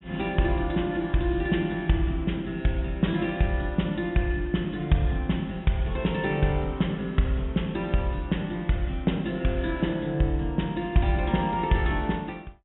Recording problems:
treble missing; nothing above 3.6 kHz

